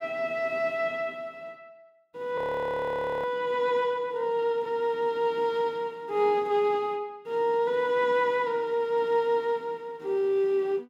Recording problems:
audio freezing; at 2.5 s for 1 s

